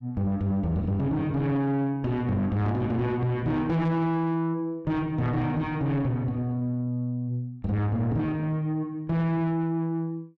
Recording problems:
distortion; soft clipping, signal-to-distortion ratio 11 dB

